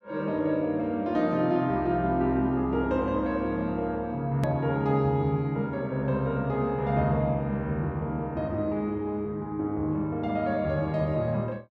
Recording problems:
click at an edit; at 4.5 s

